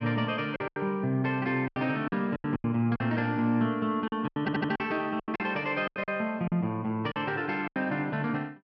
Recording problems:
lost packets; 12% of the sound replaced, filled with silence
audio stuttering; at 4.5 s

